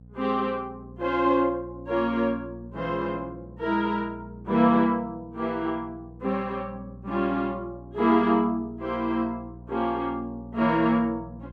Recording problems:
hum; 60 Hz, harmonics up to 540 Hz, SNR 18 dB

